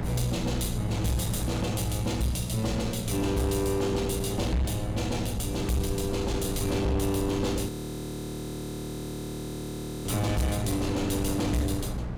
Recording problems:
distorted audio; soft clipping, signal-to-distortion ratio 10 dB
hum; 60 Hz, harmonics up to 600 Hz, SNR 7 dB
rumble; below 150 Hz, SNR 10 dB
wind on the microphone; below 490 Hz, SNR 12 dB
audio freezing; at 7.5 s for 2.5 s

